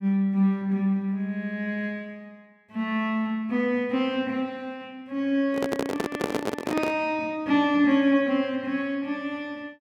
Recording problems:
microphone handling noise; from 5.5 to 7 s; peak +3 dB vs average level

